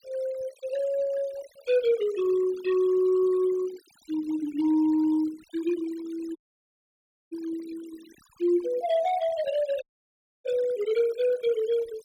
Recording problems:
noise reduction artefacts; signal-to-artefact ratio 20 dB
audio cutting out; at 6.5 s for 1 s and at 10 s for 0.5 s

